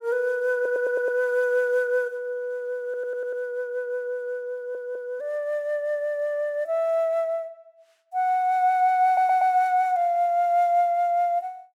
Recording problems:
audio stuttering; 4 times, first at 0.5 s

